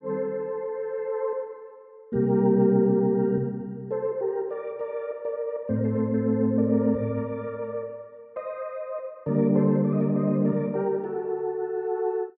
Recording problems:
none

